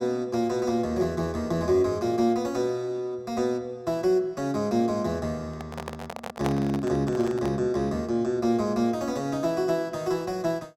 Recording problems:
microphone handling noise; from 5.5 to 7.5 s; peak 0 dB vs average level

